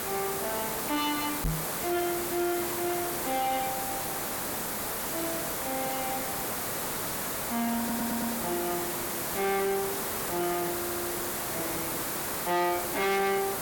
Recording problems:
distortion; soft clipping, signal-to-distortion ratio 8 dB
hiss; slope -4 dB per octave, SNR -1 dB
knock on the microphone; at 1.5 s; peak +3 dB vs average level
audio stuttering; at 8 s and at 11 s

